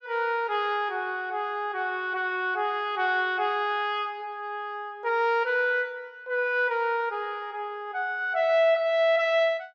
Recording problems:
none

